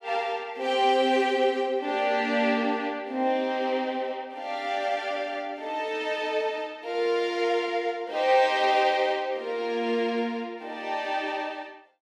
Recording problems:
none

